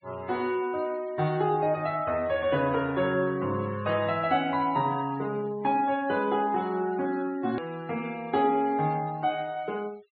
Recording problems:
treble missing; nothing above 4.5 kHz
denoising artefacts; signal-to-artefact ratio 22 dB
click at an edit; at 7.5 s

